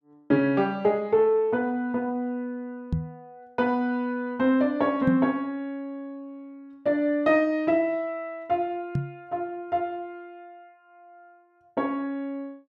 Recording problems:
microphone bump; at 3 s, at 5 s and at 9 s; peak +3 dB vs average level

